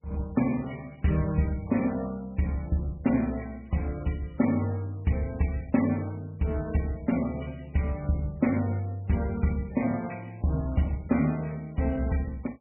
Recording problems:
lossy compression; MP3, log-spectral distance 4 dB, nothing above 2.4 kHz

